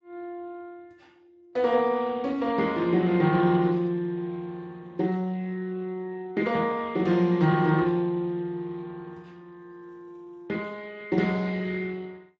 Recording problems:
codec artefacts; Speex, log-spectral distance 2 dB

